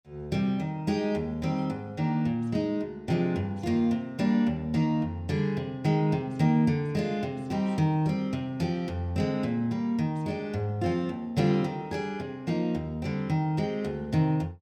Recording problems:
none

